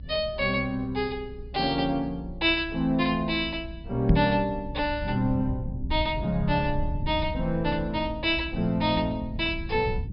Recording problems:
treble cut off; nothing above 5.3 kHz
low-frequency rumble; below 100 Hz, SNR 10 dB
microphone bump; at 4 s; peak +9 dB vs average level

